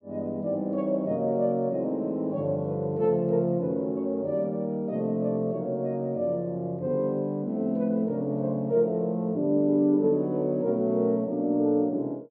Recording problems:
none

